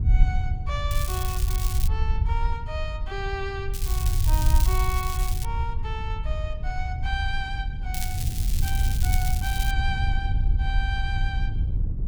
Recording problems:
hum; 50 Hz, harmonics up to 650 Hz, SNR 20 dB
low-frequency rumble; below 72 Hz, SNR -4 dB
wind noise; below 80 Hz, SNR -3 dB
crackle; at 1 s, from 3.5 to 5.5 s and from 8 to 9.5 s; loose cable, SNR 1 dB

